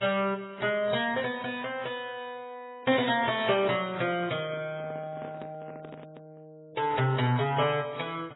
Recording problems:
lossy codec; MP3, then AAC, log-spectral distance 4 dB, nothing above 3.8 kHz
handling noise; from 3 to 6.5 s; peak -10 dB vs average level

